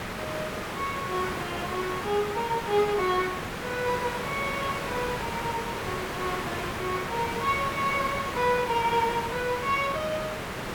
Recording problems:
background hiss; SNR 3 dB

